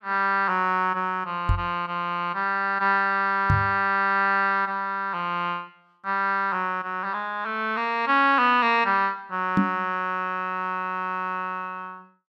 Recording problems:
microphone thump; at 1.5 s, at 3.5 s and at 9.5 s; peak +5 dB vs average level

